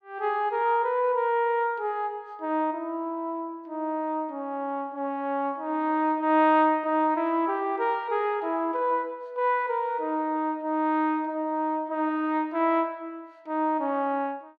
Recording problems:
none

